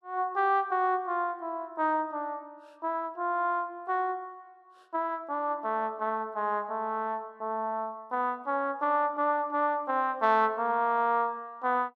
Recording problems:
none

